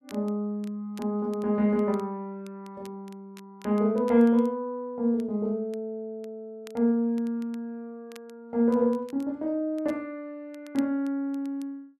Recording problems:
crackle; vinyl, SNR 29 dB

